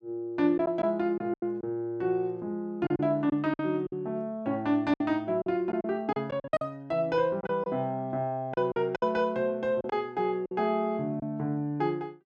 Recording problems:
lost packets; 8% of the sound replaced, filled with silence

